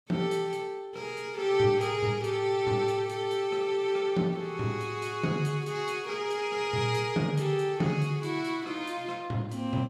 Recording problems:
none

